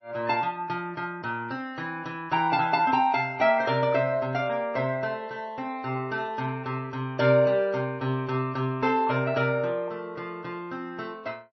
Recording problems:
lossy codec; MP3, log-spectral distance 2 dB, nothing above 5.8 kHz

